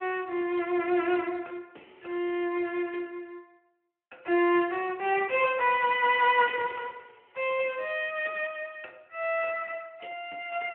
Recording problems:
telephone audio; 260 Hz to 3.1 kHz, Speex

